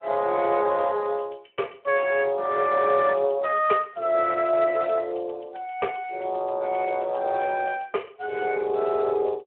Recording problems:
phone line; 340 Hz to 3.3 kHz, Speex

